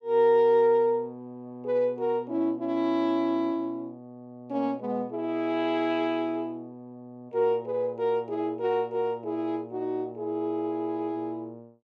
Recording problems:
none

